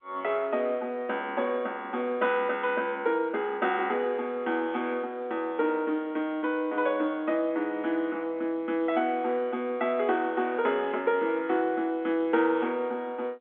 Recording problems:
telephone audio; 220 Hz to 3.8 kHz, G.711

